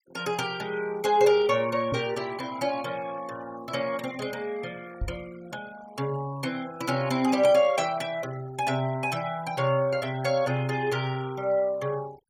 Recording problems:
denoising artefacts; signal-to-artefact ratio 20 dB
microphone bump; at 2 s and at 5 s; peak -1 dB vs average level

